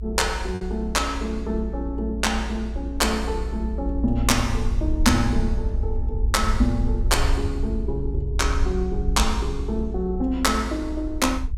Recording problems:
rumble; below 62 Hz, SNR 3 dB
packet loss; 0.5% of the sound replaced, filled with repeated pitch periods

